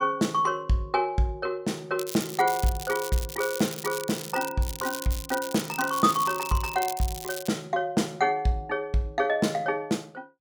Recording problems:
crackle; from 2 to 4.5 s and from 4.5 to 7.5 s; loose cable, SNR 10 dB

